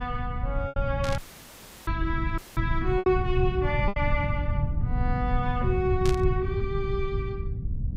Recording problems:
rumble; below 120 Hz, SNR 0 dB
lost packets; 3% of the sound replaced, filled with repeated pitch periods
static burst; at 1 s and at 6 s; peak -2 dB vs average level
dropout; at 1 s for 0.5 s and at 2.5 s; filled with static

